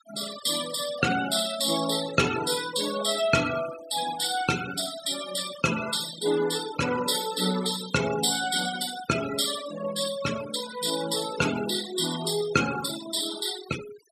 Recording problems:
noise reduction artefacts; signal-to-artefact ratio 9 dB

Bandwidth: 14 kHz